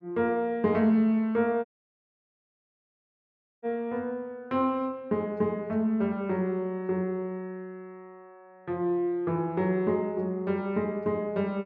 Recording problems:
audio cutting out; at 1.5 s for 2 s

